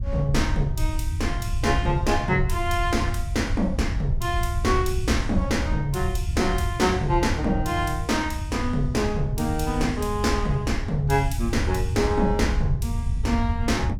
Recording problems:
rumble; below 94 Hz, SNR 3 dB

